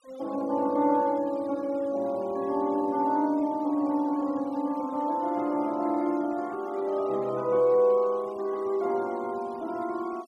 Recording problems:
noise reduction artefacts; signal-to-artefact ratio 26 dB

